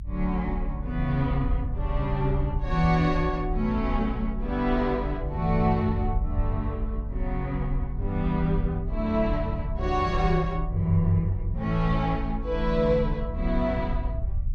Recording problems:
rumble; below 62 Hz, strongest tone 32 Hz, SNR 5 dB

